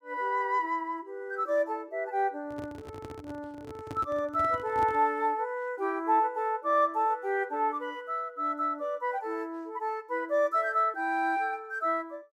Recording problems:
microphone handling noise; from 2.5 to 5 s; peak -6 dB vs average level

